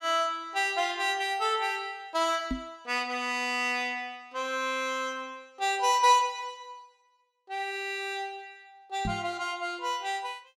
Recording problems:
microphone bump; at 2.5 s and at 9 s; peak +1 dB vs average level

